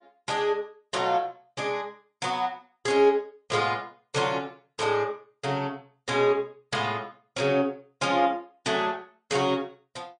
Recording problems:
codec artefacts; MP3, log-spectral distance 2 dB, nothing above 8.7 kHz

